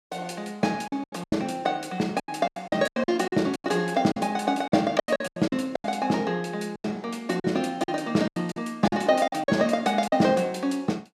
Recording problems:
lost packets; 14% of the sound replaced, filled with silence

